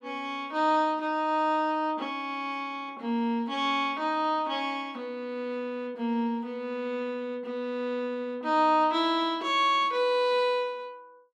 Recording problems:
none

